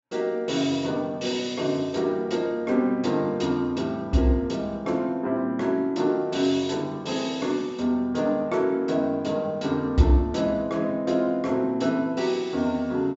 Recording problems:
low-pass filter; nothing above 8 kHz

